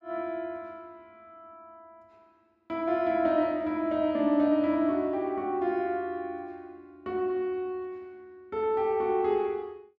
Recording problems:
none

